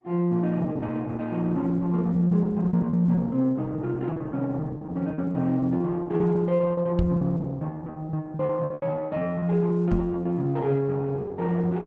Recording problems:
lossy codec; Opus, log-spectral distance 2 dB
lost packets; 13% of the sound replaced, filled with repeated pitch periods
knock on the microphone; at 7 s and at 10 s; peak +3 dB vs average level

